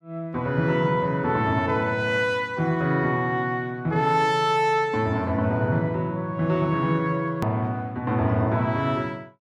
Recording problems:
click at an edit; at 7.5 s

